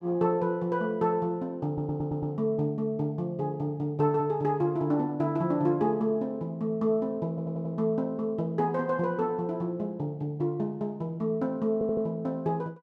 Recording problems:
audio stuttering; at 1.5 s, at 7.5 s and at 12 s

